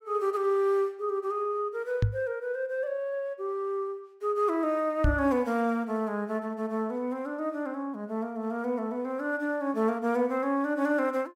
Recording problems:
microphone thump; at 2 s and at 5 s; peak +7 dB vs average level

